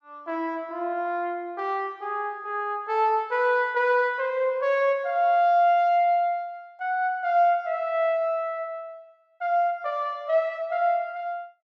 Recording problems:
none

